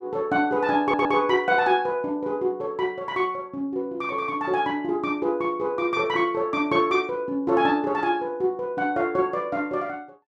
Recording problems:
stutter; at 1 s

